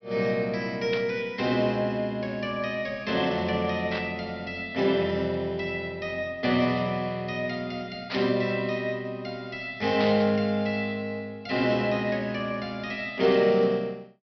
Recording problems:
treble missing; nothing above 5.5 kHz
burst of static; 4 times, first at 1 s; peak -3 dB vs average level

